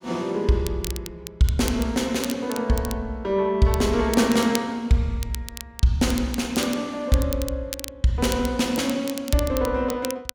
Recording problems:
crackle; vinyl, SNR 13 dB

